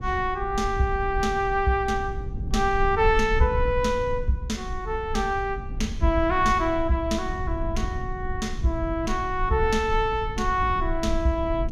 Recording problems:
low-frequency rumble; below 78 Hz, SNR 8 dB

